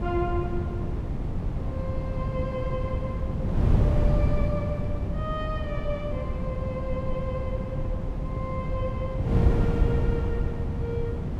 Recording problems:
wind noise; below 160 Hz, SNR -7 dB

